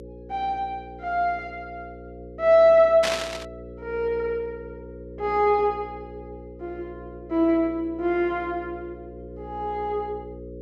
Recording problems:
hum; 60 Hz, harmonics up to 540 Hz, SNR 17 dB
static burst; at 3 s; peak +1 dB vs average level

